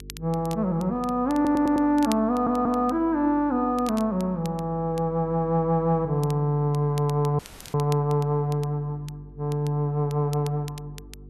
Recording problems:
hum; 50 Hz, harmonics up to 450 Hz, SNR 21 dB
crackle; vinyl, SNR 21 dB
stutter; at 1.5 s and at 2.5 s
dropout; at 7.5 s

